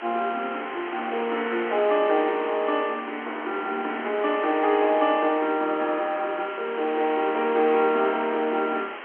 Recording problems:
telephone audio; 260 Hz to 3.3 kHz, G.711
background hiss; SNR 12 dB

